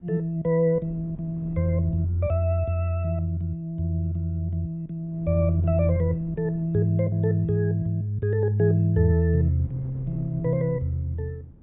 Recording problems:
treble missing; nothing above 4 kHz
wind noise; below 200 Hz, SNR 21 dB

